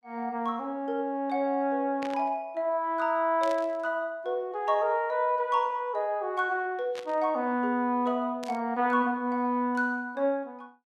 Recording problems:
burst of static; 4 times, first at 2 s; peak -8 dB vs average level

